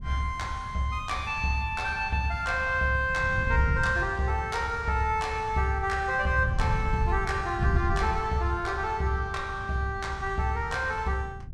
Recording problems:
wind noise; below 120 Hz, SNR 9 dB

